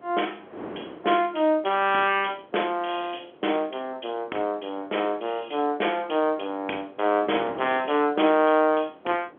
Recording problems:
telephone audio; 260 Hz to 3.4 kHz, G.711
wind on the microphone; below 730 Hz, SNR 20 dB

